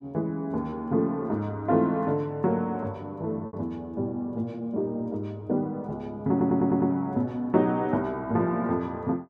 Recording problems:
packet loss; 1.1% of the sound replaced, filled with repeated pitch periods
stutter; at 6.5 s

